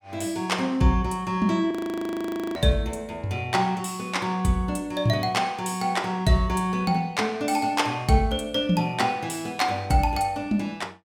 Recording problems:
frozen audio; at 1.5 s for 1 s

